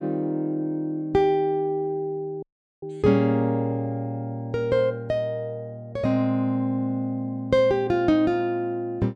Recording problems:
audio cutting out; at 2.5 s

